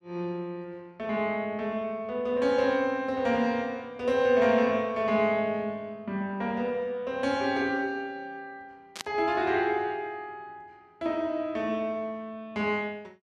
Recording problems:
burst of static; at 9 s; peak -2 dB vs average level

